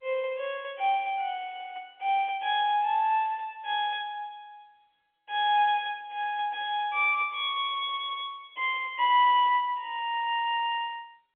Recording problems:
telephone audio; 300 Hz to 3.5 kHz, G.711

